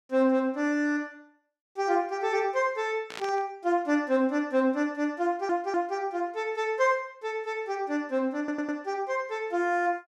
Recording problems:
burst of static; at 3 s; peak -6 dB vs average level
audio stuttering; at 5.5 s and at 8.5 s

